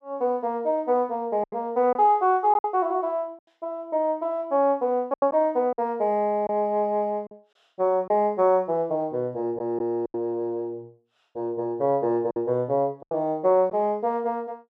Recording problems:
lost packets; 5% of the sound replaced, filled with silence

